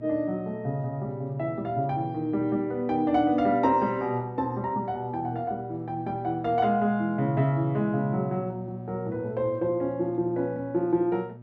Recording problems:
hum; 60 Hz, harmonics up to 960 Hz, SNR 14 dB

